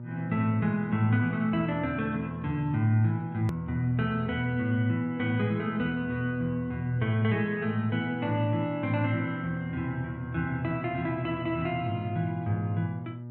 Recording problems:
treble cut off; nothing above 4 kHz
hum; 60 Hz, harmonics up to 600 Hz, SNR 12 dB
edit click; at 3.5 s

